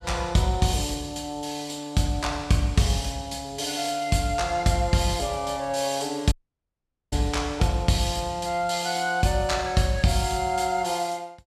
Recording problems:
audio cutting out; at 6.5 s for 1 s

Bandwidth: 14.5 kHz